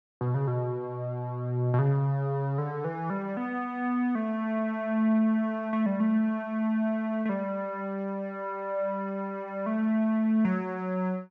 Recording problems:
none

